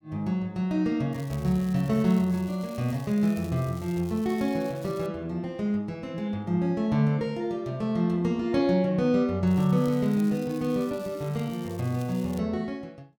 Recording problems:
crackle; from 1 to 5 s and from 9.5 to 12 s; loose cable, SNR 23 dB

